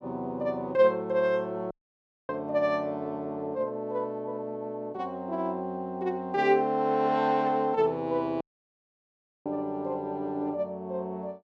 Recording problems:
dropout; at 1.5 s for 0.5 s and at 8.5 s for 1 s

